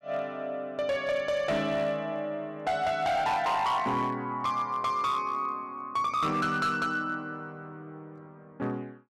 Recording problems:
distorted audio; hard clipping, signal-to-distortion ratio 11 dB

